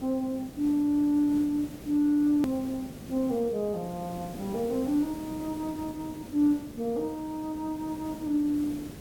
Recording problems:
background hiss; SNR 14 dB
edit click; at 2.5 s

